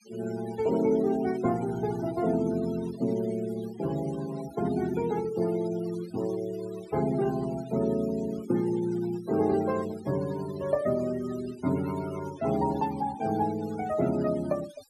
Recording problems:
noise reduction artefacts; signal-to-artefact ratio 17 dB

